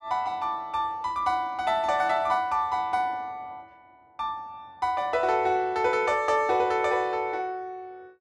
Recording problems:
none

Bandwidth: 12 kHz